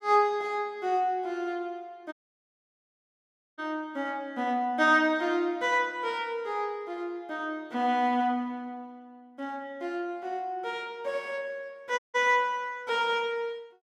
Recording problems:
audio cutting out; at 2 s for 1.5 s and at 12 s

